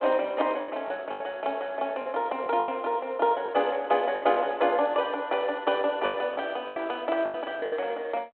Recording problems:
phone line; 240 Hz to 3.3 kHz, G.726
lost packets; 9% of the sound replaced, filled with the last packet

